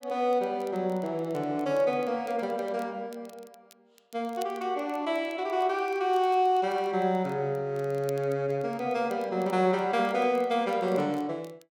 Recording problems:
crackle; vinyl, SNR 28 dB

